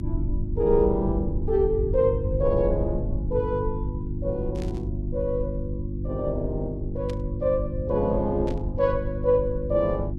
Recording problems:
hum; 50 Hz, harmonics up to 350 Hz, SNR 6 dB
low-frequency rumble; below 86 Hz, SNR 7 dB
burst of static; at 4.5 s, at 7 s and at 8.5 s; peak -13 dB vs average level

